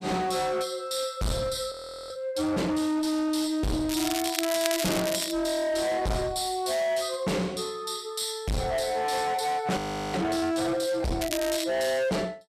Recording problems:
distortion; hard clipping, signal-to-distortion ratio 6 dB
audio freezing; at 1.5 s and at 10 s
crackle; from 4 to 5.5 s and at 11 s; loose cable, SNR 5 dB

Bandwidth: 14.5 kHz